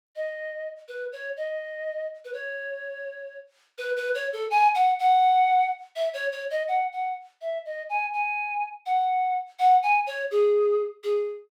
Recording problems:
none

